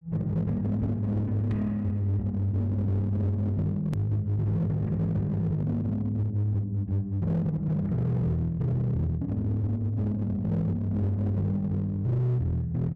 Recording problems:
distorted audio; hard clipping, uneven, signal-to-distortion ratio 11 dB
hard cut with a click; at 4 s

